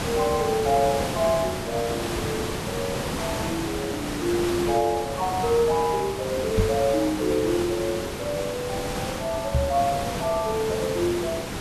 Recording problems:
background hiss; slope -4 dB per octave, SNR 4 dB
microphone thump; at 6.5 s and at 9.5 s; peak +5 dB vs average level

